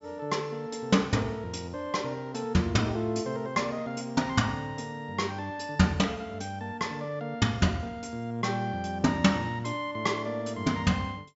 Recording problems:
low-pass filter; nothing above 8 kHz

